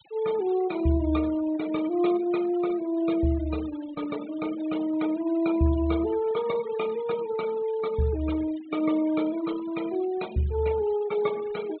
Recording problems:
treble missing; nothing above 4 kHz
denoising artefacts; signal-to-artefact ratio 18 dB

